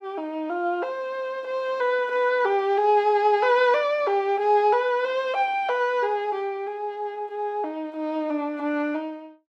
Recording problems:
none

